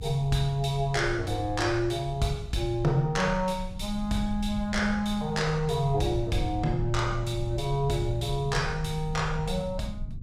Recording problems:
low-frequency rumble; below 96 Hz, SNR 10 dB

